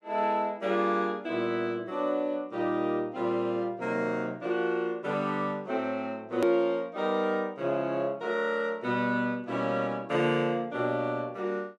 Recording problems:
click at an edit; at 6.5 s

